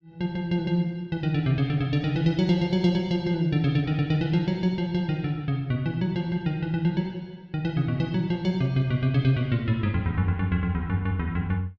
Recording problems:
none

